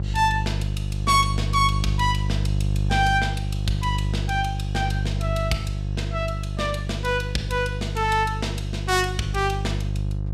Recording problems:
hum; 50 Hz, harmonics up to 500 Hz, SNR 2 dB

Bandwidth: 15 kHz